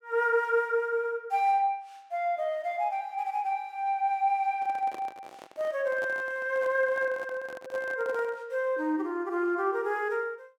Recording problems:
handling noise; from 4.5 to 8.5 s; peak -10 dB vs average level

